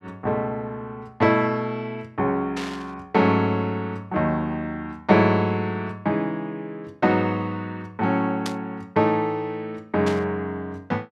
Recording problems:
static burst; at 2.5 s, at 8.5 s and at 10 s; peak -3 dB vs average level

